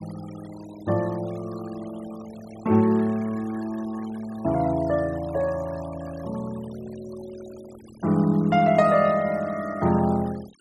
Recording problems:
denoising artefacts; signal-to-artefact ratio 22 dB

